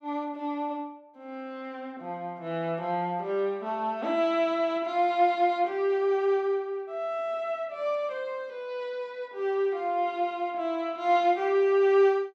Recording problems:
none

